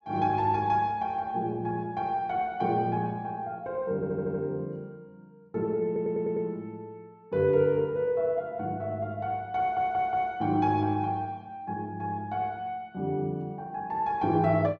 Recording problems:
stutter; at 4 s, at 6 s and at 9.5 s

